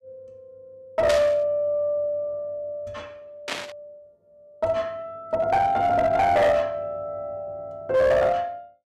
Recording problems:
distorted audio; hard clipping, uneven, signal-to-distortion ratio 11 dB
burst of static; at 1 s and at 3.5 s; peak -1 dB vs average level

